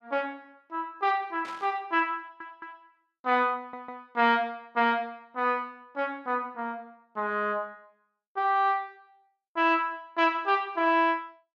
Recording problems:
burst of static; at 1.5 s; peak -12 dB vs average level
audio stuttering; at 2 s and at 3.5 s

